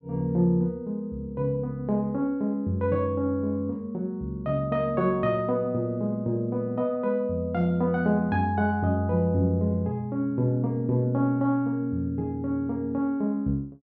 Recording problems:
none

